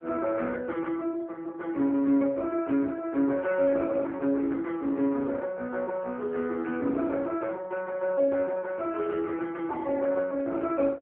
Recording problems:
telephone audio; 220 Hz to 3.1 kHz, AMR-NB
static burst; at 9 s; peak -16 dB vs average level

